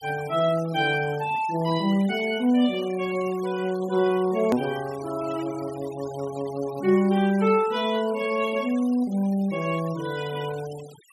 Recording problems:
noise reduction artefacts; signal-to-artefact ratio 19 dB
edit click; at 4.5 s

